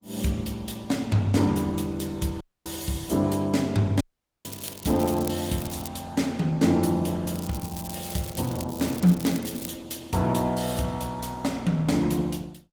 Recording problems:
lossy codec; Opus, log-spectral distance 5 dB
audio cutting out; at 2.5 s and at 4 s
crackle; from 4.5 to 6 s and from 7.5 to 9.5 s; loose cable, SNR 12 dB

